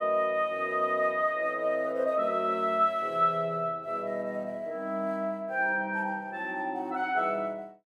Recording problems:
none

